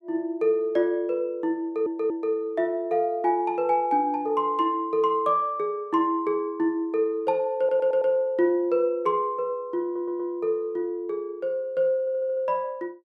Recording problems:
stutter; 4 times, first at 1.5 s

